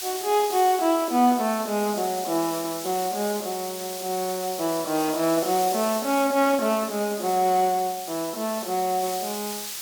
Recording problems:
background hiss; slope +3 dB per octave, SNR 9 dB

